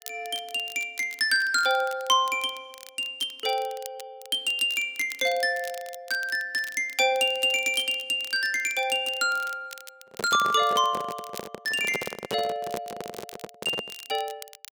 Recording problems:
crackle; vinyl, SNR 19 dB
microphone handling noise; from 10 to 14 s; peak -2 dB vs average level

